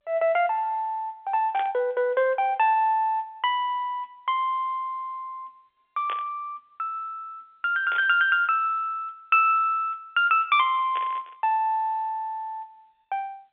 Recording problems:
telephone audio; 280 Hz to 3.5 kHz, G.711
static burst; 4 times, first at 1.5 s; peak -8 dB vs average level

